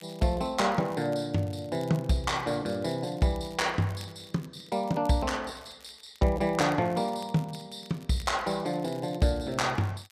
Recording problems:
crackling; vinyl, SNR 25 dB

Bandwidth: 14.5 kHz